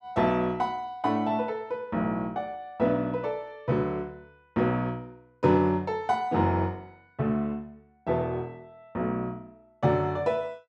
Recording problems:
none

